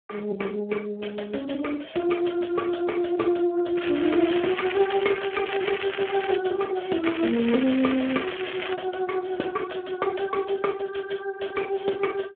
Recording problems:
telephone audio; 220 Hz to 2.2 kHz, Speex
crackle; from 4 to 6.5 s and from 7 to 8.5 s; loose cable, SNR 7 dB

